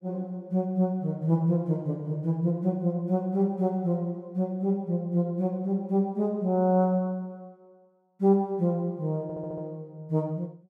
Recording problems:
stutter; at 9 s

